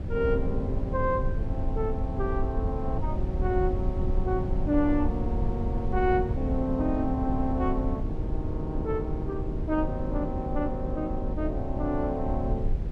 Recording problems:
rumble; below 100 Hz, SNR 2 dB

